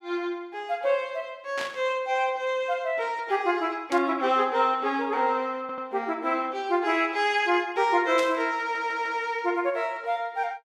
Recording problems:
burst of static; at 1.5 s, at 4 s and at 8 s; peak -4 dB vs average level
stutter; at 5.5 s and at 8.5 s

